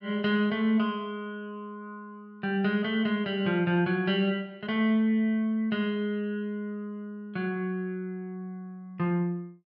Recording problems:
none

